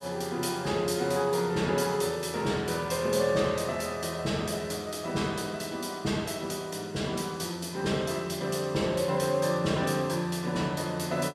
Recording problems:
none

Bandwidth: 14.5 kHz